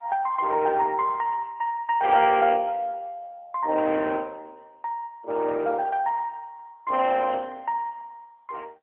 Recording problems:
telephone audio; 260 Hz to 3.3 kHz, AMR-NB

